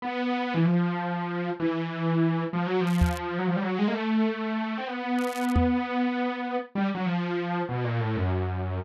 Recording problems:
crackling; at 3 s and at 5 s; loose cable, SNR 19 dB
microphone bump; at 3 s and at 5.5 s; peak +7 dB vs average level

